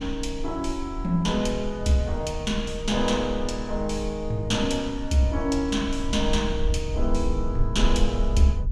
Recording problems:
rumble; below 56 Hz, SNR 6 dB

